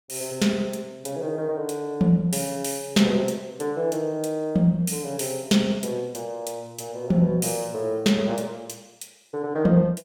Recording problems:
none

